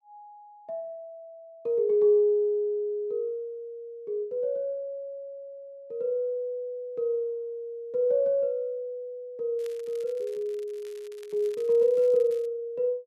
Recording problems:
crackling; from 9.5 to 12 s; loose cable, SNR 27 dB

